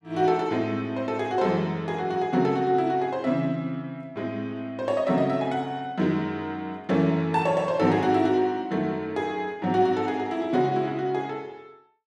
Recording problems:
none

